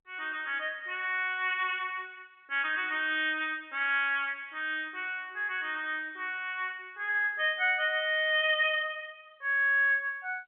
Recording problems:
phone line; 280 Hz to 3.6 kHz, G.711

